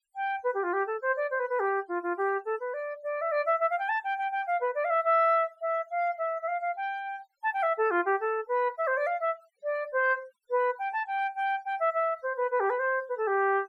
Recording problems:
noise reduction artefacts; signal-to-artefact ratio 28 dB

